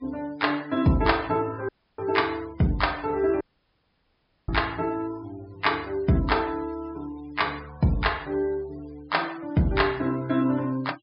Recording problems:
low-pass filter; nothing above 5.5 kHz
noise reduction artefacts; signal-to-artefact ratio 23 dB
audio cutting out; at 1.5 s and at 3.5 s for 1 s

